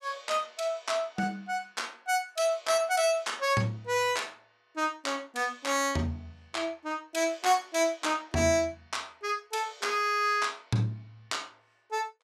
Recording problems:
none

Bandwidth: 14.5 kHz